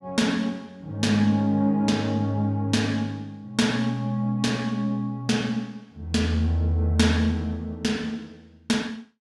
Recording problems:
none

